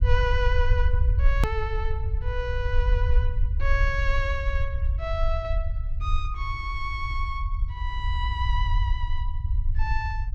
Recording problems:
rumble; below 68 Hz, SNR -4 dB
click at an edit; at 1.5 s

